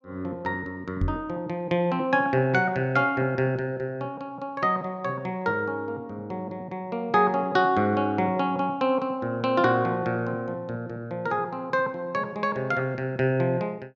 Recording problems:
knock on the microphone; at 1 s; peak +3 dB vs average level

